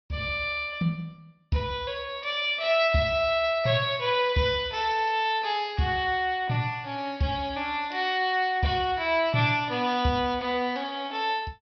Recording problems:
treble cut off; nothing above 5.5 kHz

